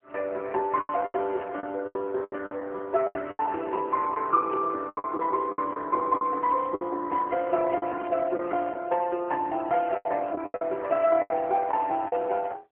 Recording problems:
phone line; 300 Hz to 3.2 kHz, AMR-NB
lost packets; 12% of the sound replaced, filled with the last packet
burst of static; 5 times, first at 1.5 s; peak -15 dB vs average level

